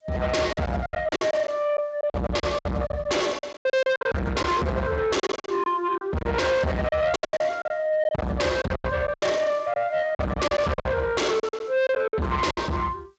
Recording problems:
lossy compression; G.722, then Speex, log-spectral distance 3 dB, nothing above 7.3 kHz
distorted audio; soft clipping, signal-to-distortion ratio 6 dB
lost packets; 15% of the sound replaced, filled with silence

